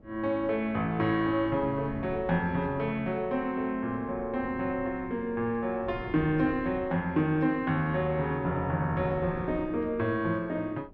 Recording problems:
wind on the microphone; below 340 Hz, SNR 18 dB

